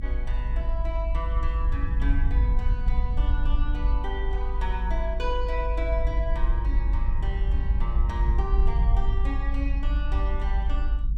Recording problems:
rumble; below 52 Hz, SNR -8 dB

